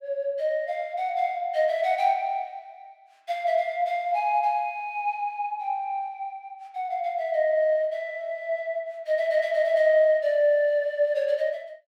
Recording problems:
none

